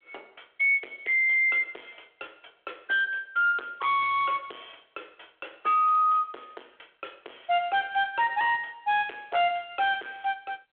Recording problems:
phone line; 320 Hz to 3.5 kHz, G.726
distortion; soft clipping, signal-to-distortion ratio 9 dB

